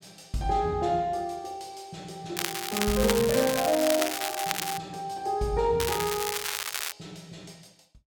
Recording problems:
crackle; from 2.5 to 5 s and from 6 to 7 s; loose cable, SNR 3 dB

